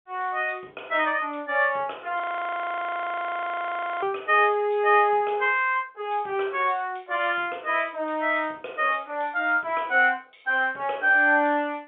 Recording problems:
telephone audio; 320 Hz to 3.5 kHz, G.711
audio freezing; at 2 s for 2 s

